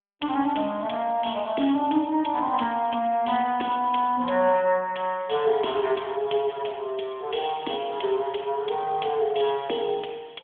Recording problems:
telephone audio; 240 Hz to 3.4 kHz, AMR-NB

